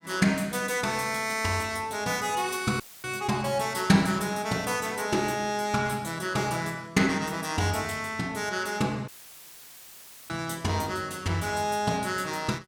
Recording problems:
audio cutting out; at 3 s and at 9 s for 1 s; filled with static

